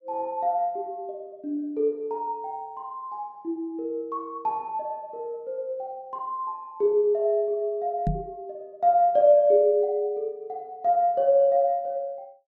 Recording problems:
microphone thump; at 8 s; peak +1 dB vs average level

